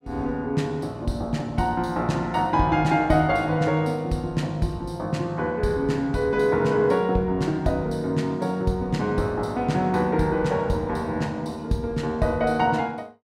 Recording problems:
none

